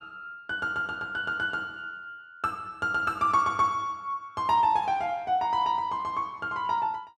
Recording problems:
none

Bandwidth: 12.5 kHz